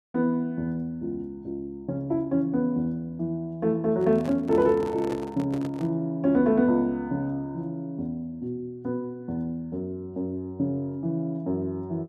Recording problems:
handling noise; from 4 to 6 s; peak -6 dB vs average level

